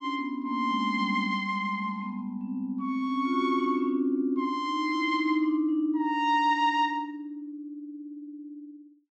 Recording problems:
none

